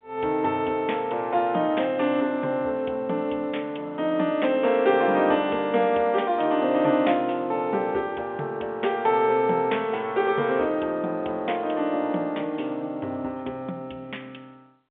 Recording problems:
telephone audio; 280 Hz to 3.6 kHz, G.711

